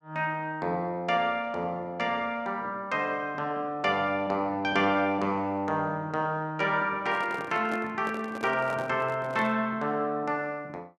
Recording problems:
microphone handling noise; from 7 to 9.5 s; peak -6 dB vs average level

